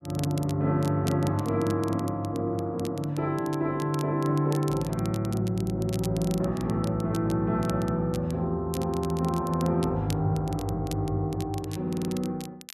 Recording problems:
crackling; vinyl, SNR 18 dB
audio stuttering; at 12 s

